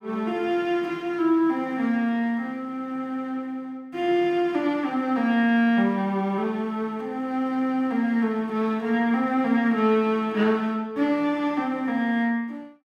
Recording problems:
none

